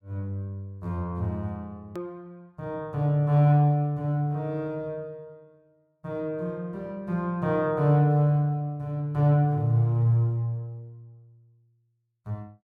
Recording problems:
edit click; at 2 s

